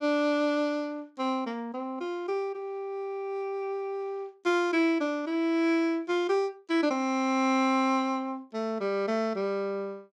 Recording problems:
none

